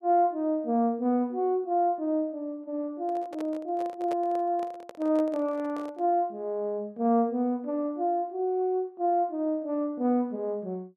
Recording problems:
handling noise; from 3 to 6 s; peak -6 dB vs average level

